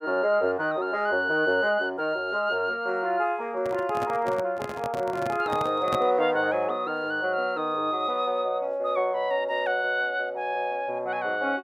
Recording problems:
handling noise; from 3.5 to 6 s; peak 0 dB vs average level

